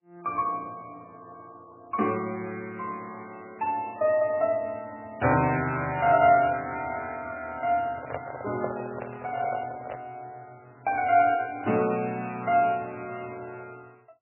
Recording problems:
lossy codec; MP3, log-spectral distance 4 dB, nothing above 2.4 kHz
handling noise; from 8 to 10 s; peak 0 dB vs average level

